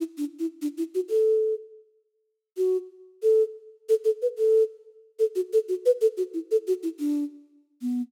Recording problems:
none

